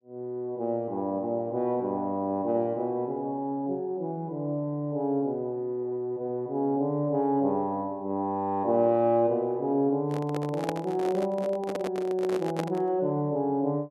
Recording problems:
handling noise; from 10 to 13 s; peak +1 dB vs average level

